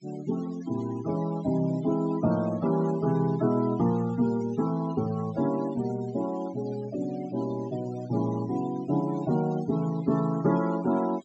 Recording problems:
treble missing; nothing above 7.7 kHz
noise reduction artefacts; signal-to-artefact ratio 18 dB

